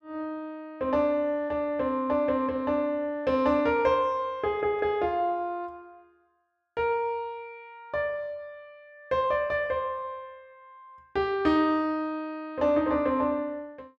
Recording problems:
none

